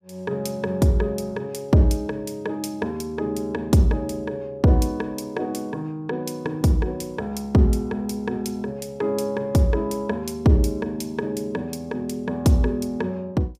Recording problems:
none

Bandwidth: 15.5 kHz